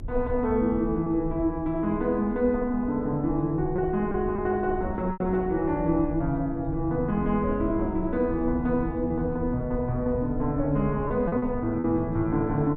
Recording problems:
rumble; below 96 Hz, SNR 12 dB
lost packets; 3% of the sound replaced, filled with repeated pitch periods

